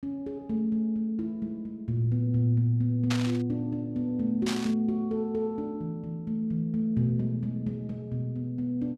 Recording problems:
static burst; at 3 s and at 4.5 s; peak +1 dB vs average level

